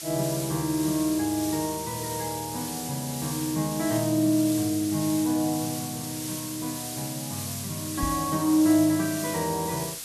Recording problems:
hiss; SNR 7 dB
microphone bump; at 8 s; peak -1 dB vs average level

